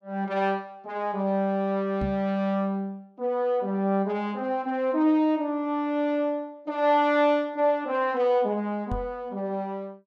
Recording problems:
microphone bump; at 2 s and at 9 s; peak -2 dB vs average level

